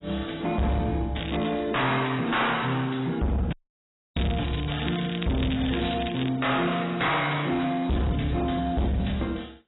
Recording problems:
lossy codec; AAC, log-spectral distance 9 dB, nothing above 3.9 kHz
distorted audio; soft clipping, signal-to-distortion ratio 6 dB
crackling; at 1 s and from 4 to 6.5 s; loose cable, SNR 11 dB
audio cutting out; at 3.5 s for 0.5 s

